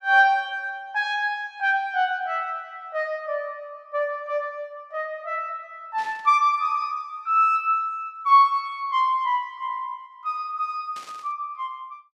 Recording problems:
burst of static; at 6 s and at 11 s; peak -15 dB vs average level

